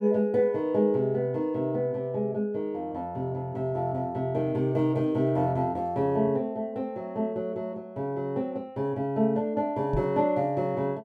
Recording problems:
microphone bump; at 10 s; peak +1 dB vs average level

